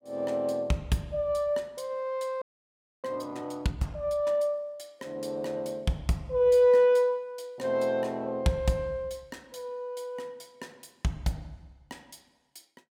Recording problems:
frozen audio; at 2.5 s for 0.5 s

